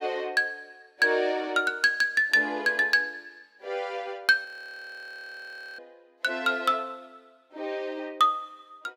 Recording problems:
frozen audio; at 4.5 s for 1.5 s

